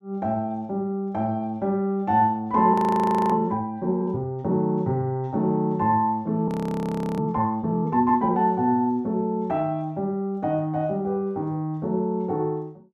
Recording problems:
frozen audio; at 2.5 s for 0.5 s and at 6.5 s for 0.5 s

